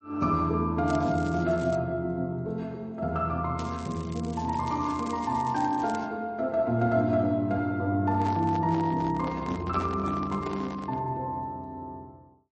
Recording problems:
lossy codec; MP3, log-spectral distance 2 dB, nothing above 7.8 kHz
crackling; at 1 s and from 3.5 to 6 s; loose cable, SNR 21 dB
handling noise; from 8 to 11 s; peak -5 dB vs average level

